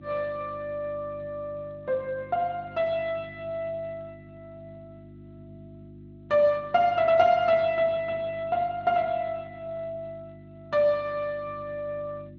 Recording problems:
lossy codec; Speex, log-spectral distance 2 dB
hum; 50 Hz, harmonics up to 350 Hz, SNR 19 dB

